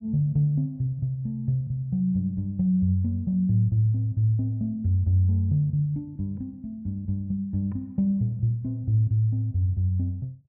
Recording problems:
none

